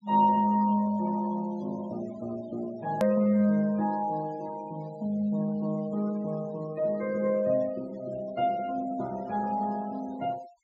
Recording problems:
treble cut off; nothing above 8 kHz
denoising artefacts; signal-to-artefact ratio 22 dB
hard cut with a click; at 3 s

